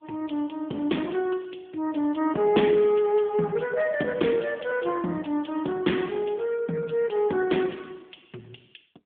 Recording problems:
phone line; 190 Hz to 3.4 kHz, AMR-NB

